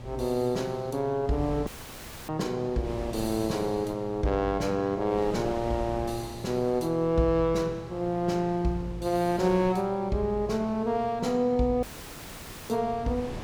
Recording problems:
electrical hum; 60 Hz, harmonics up to 600 Hz, SNR 18 dB
wind on the microphone; below 640 Hz, SNR 16 dB
dropout; at 1.5 s for 0.5 s and at 12 s for 1 s

